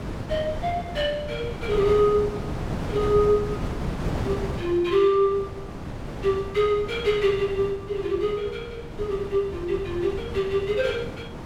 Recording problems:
wind on the microphone; below 470 Hz, SNR 9 dB

